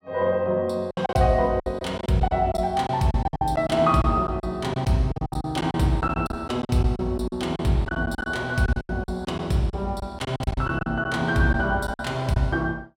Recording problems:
lost packets; 14% of the sound replaced, filled with silence

